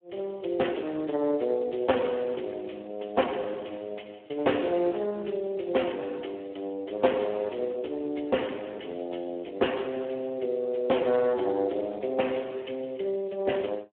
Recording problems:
phone line; 220 Hz to 3.3 kHz, Speex

